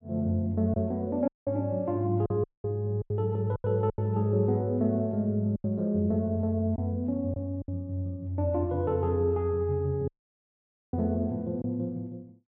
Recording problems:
lost packets; 5% of the sound replaced, filled with silence
audio cutting out; at 1.5 s, at 2.5 s and at 10 s for 1 s

